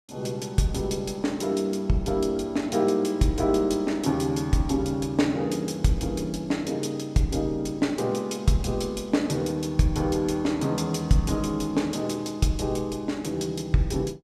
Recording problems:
none

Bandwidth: 14.5 kHz